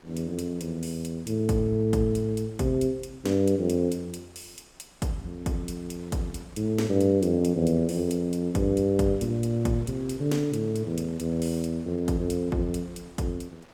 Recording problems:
wind on the microphone; below 2 kHz, SNR 27 dB

